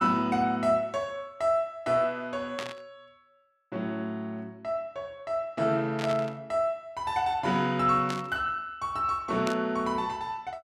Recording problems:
static burst; 4 times, first at 2.5 s; peak -2 dB vs average level

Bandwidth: 14 kHz